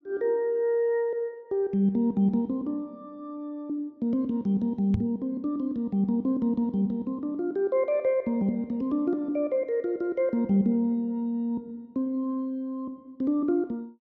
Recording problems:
knock on the microphone; at 5 s; peak +4 dB vs average level

